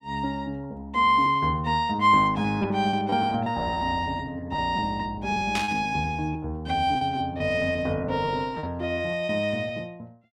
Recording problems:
lost packets; 11% of the sound replaced, filled with repeated pitch periods
static burst; at 5.5 s; peak 0 dB vs average level

